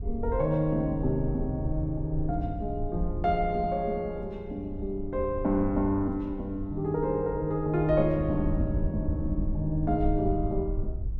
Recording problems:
wind on the microphone; below 76 Hz, SNR 7 dB

